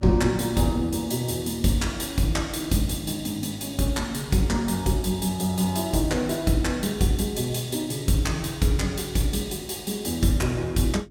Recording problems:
hum; 50 Hz, harmonics up to 400 Hz, SNR 25 dB

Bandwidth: 17 kHz